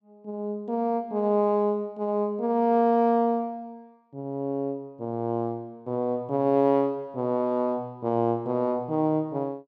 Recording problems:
none

